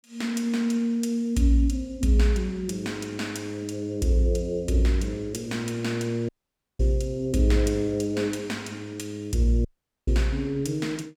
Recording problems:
dropout; at 6.5 s for 0.5 s and at 9.5 s

